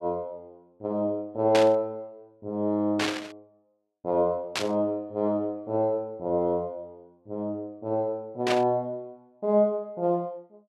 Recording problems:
static burst; 4 times, first at 1.5 s; peak +3 dB vs average level

